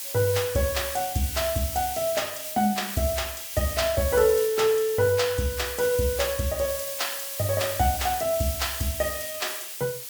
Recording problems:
background hiss; SNR 6 dB

